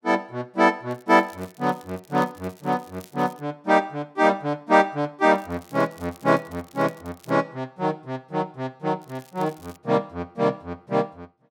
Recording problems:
crackling; from 1 to 3.5 s, from 5.5 to 7.5 s and at 9 s; loose cable, SNR 27 dB

